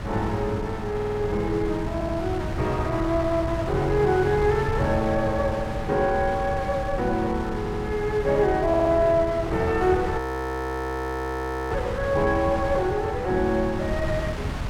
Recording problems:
wind noise; below 290 Hz, SNR 8 dB
stutter; 4 times, first at 1 s
audio freezing; at 10 s for 1.5 s

